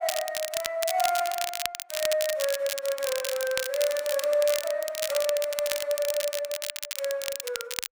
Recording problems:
crackling; vinyl, SNR 4 dB

